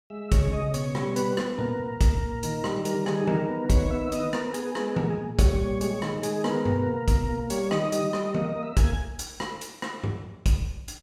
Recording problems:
none

